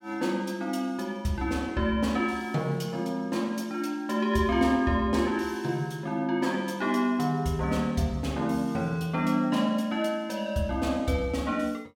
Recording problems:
none

